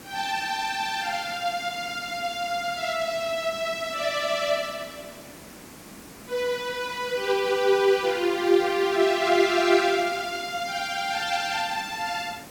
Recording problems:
hiss; slope -4 dB per octave, SNR 18 dB

